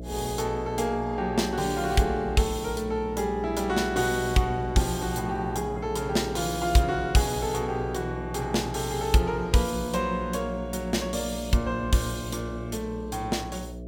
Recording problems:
hum; 60 Hz, harmonics up to 660 Hz, SNR 10 dB

